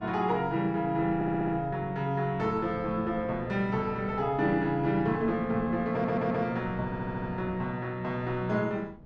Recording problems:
wind on the microphone; below 330 Hz, SNR 18 dB
stutter; at 1 s, at 6 s and at 7 s

